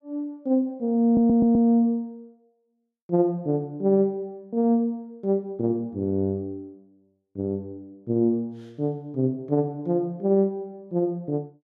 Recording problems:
stutter; at 1 s

